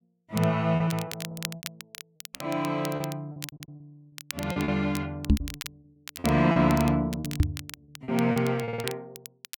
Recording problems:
crackle; vinyl, SNR 13 dB
lost packets; 14% of the sound replaced, filled with repeated pitch periods
stutter; at 1.5 s, at 3.5 s and at 8.5 s
knock on the microphone; at 5.5 s and at 7.5 s; peak +9 dB vs average level

